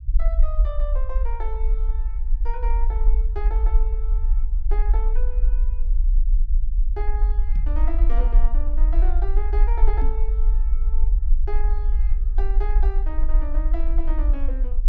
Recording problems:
rumble; below 44 Hz, strongest tone 20 Hz, SNR -13 dB
knock on the microphone; at 7.5 s and at 10 s; peak +4 dB vs average level

